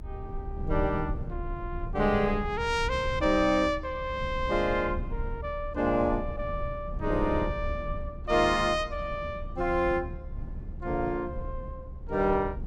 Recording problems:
rumble; below 94 Hz, strongest tone 30 Hz, SNR 9 dB

